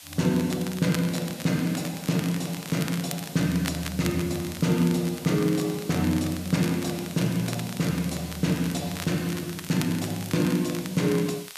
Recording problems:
hiss; slope +2 dB per octave, SNR 15 dB
crackle; vinyl, SNR 14 dB

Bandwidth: 14.5 kHz